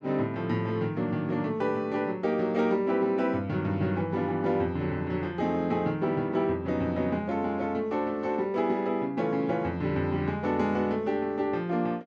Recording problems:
none

